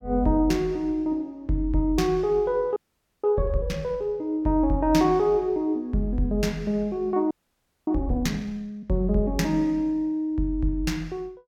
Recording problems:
audio freezing; at 3 s and at 7.5 s for 0.5 s

